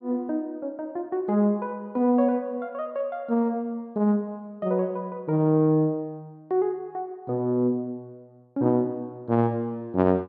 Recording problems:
none

